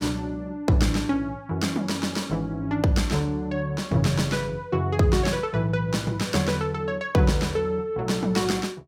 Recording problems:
none

